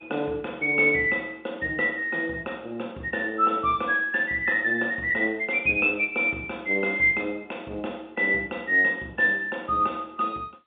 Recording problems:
telephone audio; 190 Hz to 3.7 kHz, G.711

